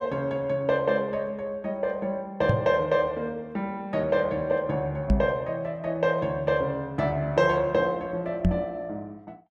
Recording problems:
knock on the microphone; at 2.5 s, at 5 s and at 8.5 s; peak +7 dB vs average level

